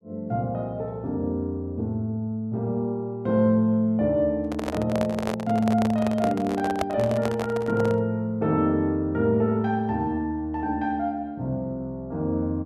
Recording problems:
handling noise; from 4.5 to 8 s; peak +2 dB vs average level

